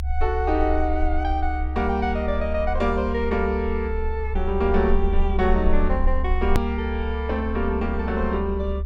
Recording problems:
low-frequency rumble; below 70 Hz, strongest tone 20 Hz, SNR 3 dB
click at an edit; at 6.5 s

